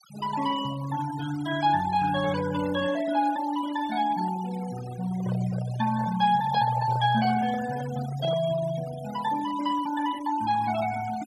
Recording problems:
denoising artefacts; signal-to-artefact ratio 15 dB
microphone handling noise; from 5 to 8.5 s; peak -8 dB vs average level

